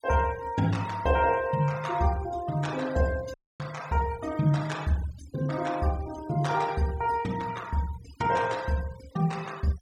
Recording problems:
noise reduction artefacts; signal-to-artefact ratio 18 dB
audio cutting out; at 3.5 s

